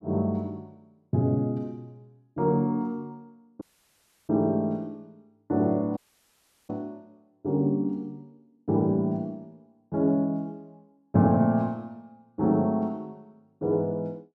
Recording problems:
dropout; at 3.5 s for 0.5 s and at 6 s for 0.5 s

